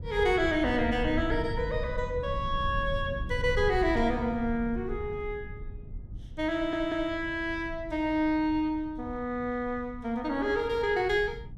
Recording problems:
low-frequency rumble; below 100 Hz, SNR 10 dB
burst of static; at 4 s; peak -15 dB vs average level
audio stuttering; at 6.5 s

